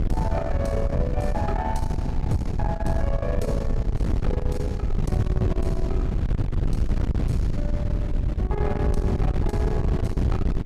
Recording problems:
distorted audio; soft clipping, signal-to-distortion ratio 13 dB
hum; 50 Hz, harmonics up to 400 Hz, SNR 10 dB
wind noise; below 130 Hz, SNR -3 dB

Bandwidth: 14.5 kHz